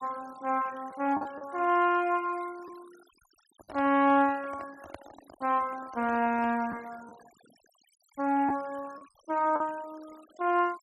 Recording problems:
noise reduction artefacts; signal-to-artefact ratio 24 dB
lost packets; 3% of the sound replaced, filled with the last packet
handling noise; from 3.5 to 7 s; peak -10 dB vs average level

